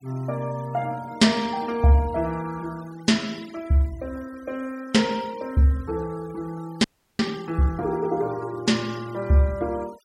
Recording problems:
denoising artefacts; signal-to-artefact ratio 23 dB
audio freezing; at 7 s

